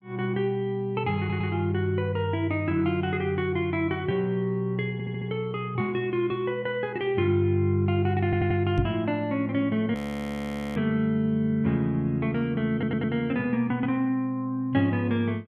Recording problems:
stutter; 4 times, first at 1 s
microphone thump; at 9 s; peak +3 dB vs average level
frozen audio; at 10 s for 1 s

